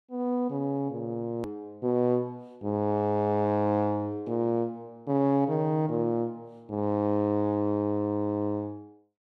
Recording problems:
hard cut with a click; at 1.5 s

